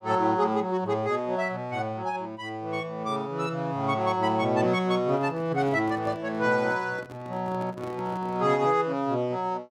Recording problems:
microphone handling noise; from 5 to 8.5 s; peak -10 dB vs average level

